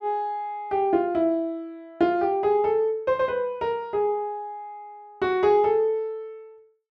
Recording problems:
none

